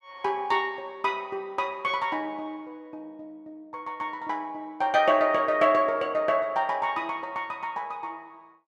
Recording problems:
none

